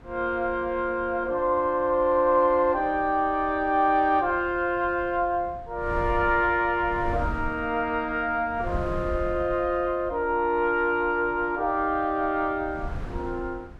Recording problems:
wind noise; below 160 Hz, SNR 16 dB

